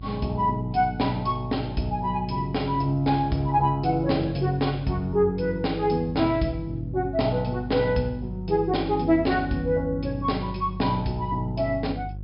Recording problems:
low-pass filter; nothing above 5.5 kHz
hum; 50 Hz, harmonics up to 350 Hz, SNR 12 dB

